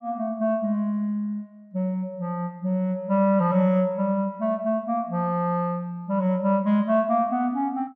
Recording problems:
none

